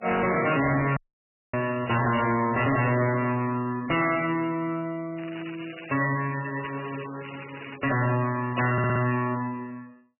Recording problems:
codec artefacts; MP3, log-spectral distance 9 dB, nothing above 2.8 kHz
distortion; soft clipping, signal-to-distortion ratio 6 dB
crackle; from 0.5 to 2 s and from 5 to 8 s; loose cable, SNR 17 dB
dropout; at 1 s for 0.5 s
audio stuttering; at 8.5 s

